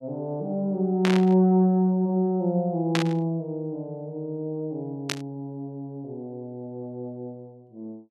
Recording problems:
burst of static; at 1 s, at 3 s and at 5 s; peak +3 dB vs average level

